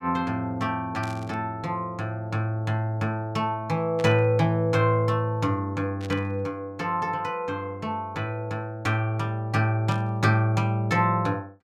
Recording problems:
static burst; 4 times, first at 1 s; peak -10 dB vs average level

